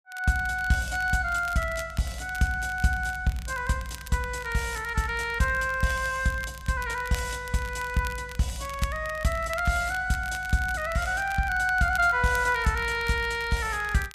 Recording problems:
crackling; vinyl, SNR 18 dB

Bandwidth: 14.5 kHz